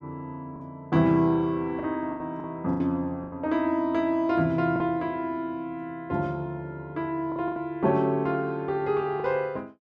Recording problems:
packet loss; 6% of the sound replaced, filled with the last packet

